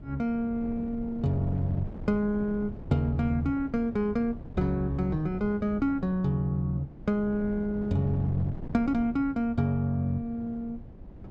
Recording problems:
wind noise; below 220 Hz, SNR 13 dB

